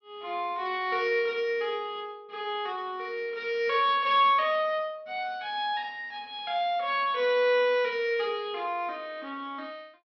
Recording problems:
treble cut off; nothing above 5.5 kHz

